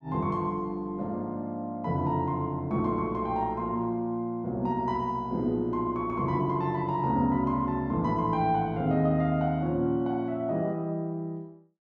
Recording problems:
none

